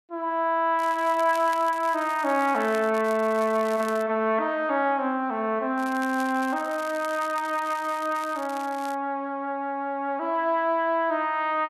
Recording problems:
crackle; from 1 to 3 s, from 3 to 4 s and from 6 to 9 s; loose cable, SNR 19 dB

